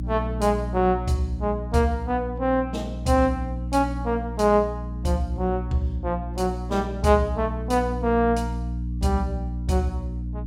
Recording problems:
hum; 60 Hz, harmonics up to 300 Hz, SNR 7 dB

